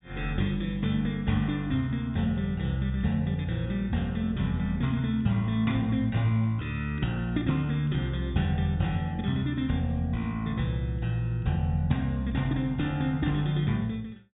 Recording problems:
low-pass filter; nothing above 4 kHz

